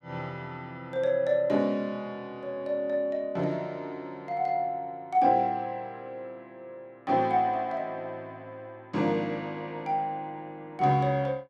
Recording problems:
none

